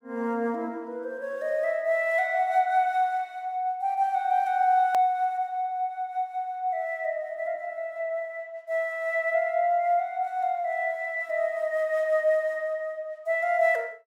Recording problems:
click at an edit; at 5 s

